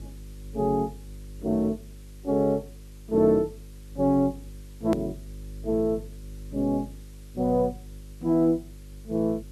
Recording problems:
electrical hum; 50 Hz, harmonics up to 550 Hz, SNR 17 dB
hiss; slope +1 dB per octave, SNR 29 dB
edit click; at 5 s

